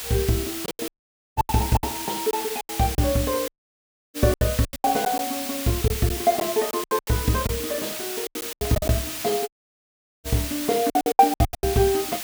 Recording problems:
background hiss; slope +1 dB per octave, SNR 6 dB
lost packets; 15% of the sound replaced, filled with silence
audio cutting out; at 1 s, at 3.5 s for 0.5 s and at 9.5 s for 1 s

